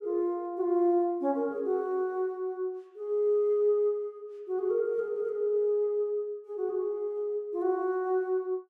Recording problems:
none

